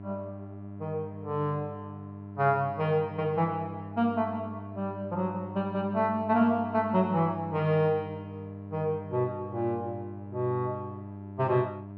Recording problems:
hum; 50 Hz, harmonics up to 1 kHz, SNR 12 dB

